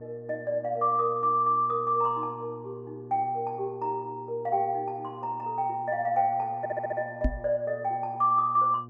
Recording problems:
hum; 60 Hz, harmonics up to 840 Hz, SNR 19 dB
audio stuttering; at 6.5 s
knock on the microphone; at 7 s; peak +4 dB vs average level

